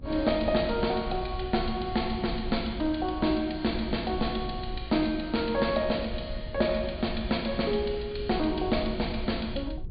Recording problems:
treble cut off; nothing above 4.7 kHz
rumble; below 88 Hz, SNR 11 dB

